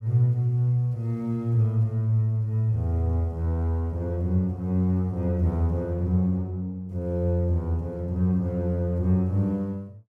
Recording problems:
none

